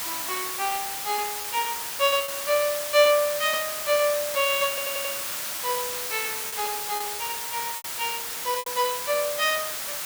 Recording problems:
hiss; slope +1 dB per octave, SNR 3 dB
lost packets; 4% of the sound replaced, filled with repeated pitch periods
stutter; at 4.5 s

